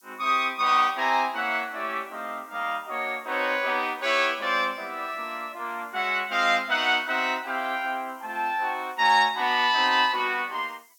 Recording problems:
hiss; SNR 30 dB

